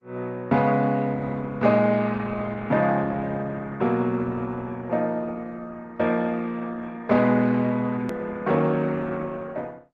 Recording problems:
lossy codec; Opus, log-spectral distance 3 dB, nothing above 13.1 kHz
edit click; at 8 s

